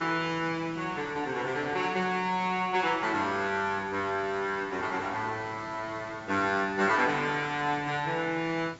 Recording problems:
treble missing; nothing above 7.6 kHz
hiss; slope -4 dB per octave, SNR 20 dB

